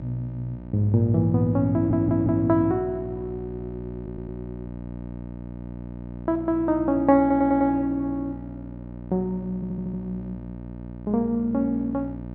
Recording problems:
hum; 60 Hz, harmonics up to 960 Hz, SNR 13 dB
stutter; 4 times, first at 1.5 s

